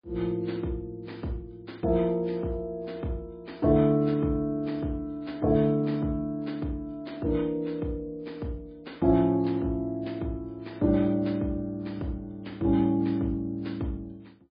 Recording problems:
lossy codec; MP3, log-spectral distance 2 dB, nothing above 4.4 kHz

